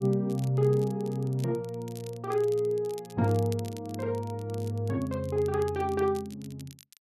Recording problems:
crackle; vinyl, SNR 22 dB

